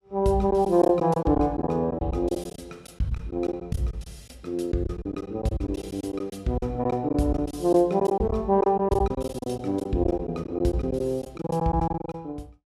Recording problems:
packet loss; 12% of the sound replaced, filled with silence

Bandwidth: 15 kHz